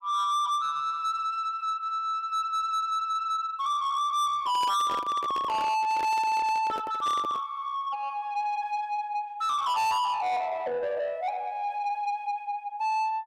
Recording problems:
distorted audio; soft clipping, signal-to-distortion ratio 6 dB
microphone handling noise; from 4.5 to 7.5 s; peak -4 dB vs average level

